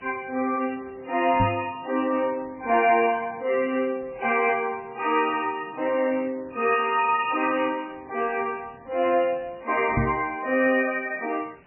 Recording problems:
lossy compression; MP3, log-spectral distance 7 dB, nothing above 2.5 kHz
background hiss; SNR 27 dB
microphone bump; at 1.5 s and at 10 s; peak +2 dB vs average level

